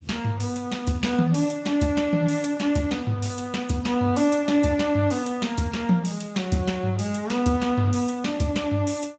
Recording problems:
codec artefacts; Speex, log-spectral distance 4 dB, nothing above 7.8 kHz

